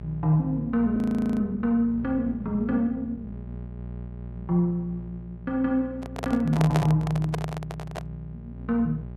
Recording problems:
electrical hum; 60 Hz, harmonics up to 660 Hz, SNR 13 dB
audio freezing; at 1 s
handling noise; from 6 to 8 s; peak +3 dB vs average level

